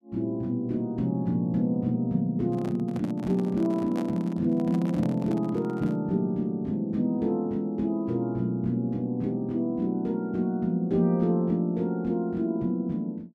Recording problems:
handling noise; from 2.5 to 6 s; peak -8 dB vs average level

